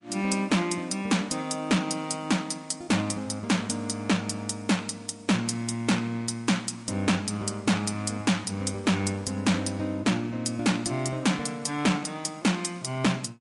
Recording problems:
codec artefacts; MP3, log-spectral distance 3 dB, nothing above 10.7 kHz
distortion; hard clipping, signal-to-distortion ratio 10 dB

